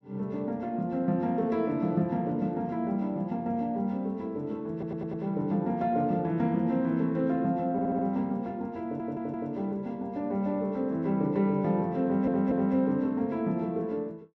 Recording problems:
audio stuttering; 4 times, first at 4.5 s

